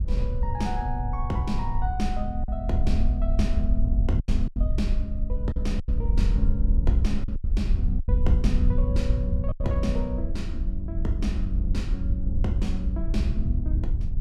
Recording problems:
wind noise; below 66 Hz, SNR -4 dB
packet loss; 4% of the sound replaced, filled with silence

